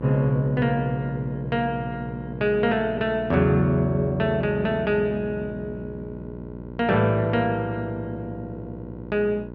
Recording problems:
hum; 60 Hz, harmonics up to 1.1 kHz, SNR 12 dB

